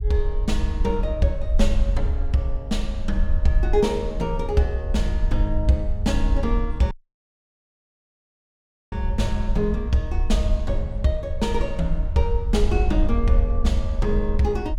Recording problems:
rumble; below 58 Hz, SNR 1 dB
dropout; at 7 s for 2 s

